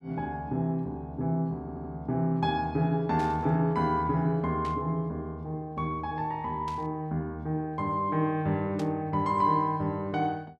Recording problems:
audio stuttering; at 1.5 s
static burst; 4 times, first at 3 s; peak -11 dB vs average level

